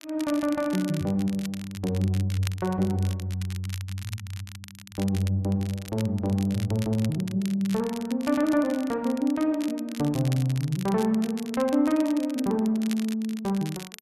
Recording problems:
crackle; vinyl, SNR 16 dB

